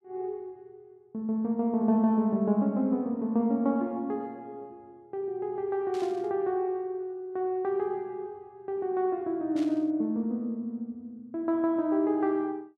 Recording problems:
burst of static; at 6 s and at 9.5 s; peak -13 dB vs average level

